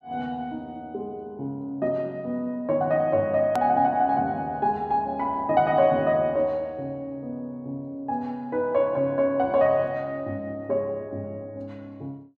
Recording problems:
click at an edit; at 3.5 s

